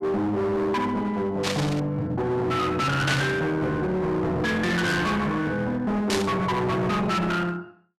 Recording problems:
distorted audio; hard clipping, uneven, signal-to-distortion ratio 6 dB
static burst; at 1.5 s, at 3 s and at 6 s; peak +2 dB vs average level

